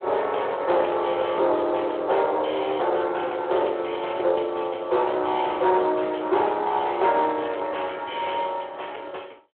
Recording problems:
telephone audio; 340 Hz to 3.4 kHz, Speex
distorted audio; soft clipping, signal-to-distortion ratio 13 dB

